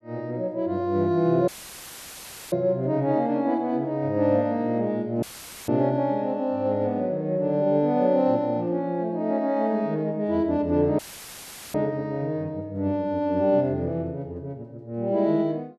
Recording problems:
audio cutting out; at 1.5 s for 1 s, at 5 s and at 11 s for 1 s; filled with static

